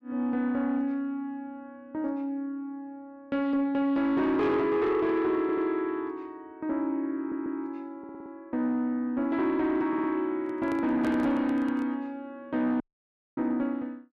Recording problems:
distorted audio; soft clipping, signal-to-distortion ratio 12 dB
stutter; 4 times, first at 5.5 s
microphone handling noise; from 10 to 12 s; peak -4 dB vs average level
dropout; at 13 s for 0.5 s

